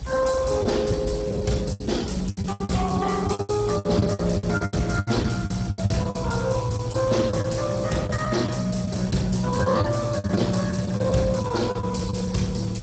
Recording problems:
codec artefacts; Speex, log-spectral distance 4 dB, nothing above 7.8 kHz
hiss; slope -1 dB per octave, SNR 22 dB
rumble; below 140 Hz, SNR 11 dB
packet loss; 16% of the sound replaced, filled with the last packet

